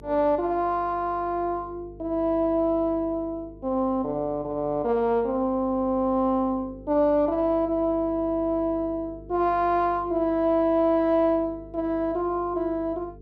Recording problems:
hum; 50 Hz, harmonics up to 450 Hz, SNR 21 dB

